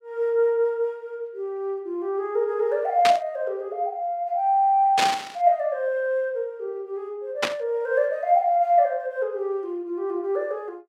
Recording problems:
burst of static; at 3 s, at 5 s and at 7.5 s; peak +5 dB vs average level

